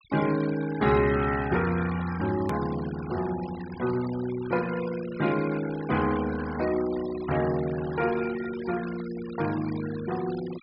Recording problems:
treble missing; nothing above 5.5 kHz
denoising artefacts; signal-to-artefact ratio 14 dB
edit click; at 2.5 s

